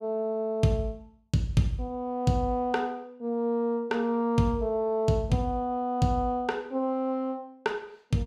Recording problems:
none

